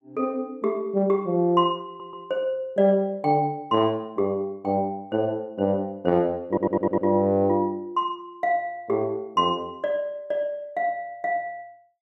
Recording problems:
audio stuttering; at 2 s and at 6.5 s

